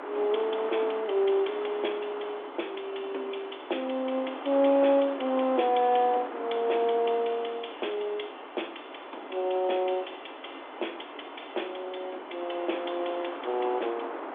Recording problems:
phone line; 240 Hz to 3.6 kHz, G.726
wind on the microphone; below 1.2 kHz, SNR 11 dB

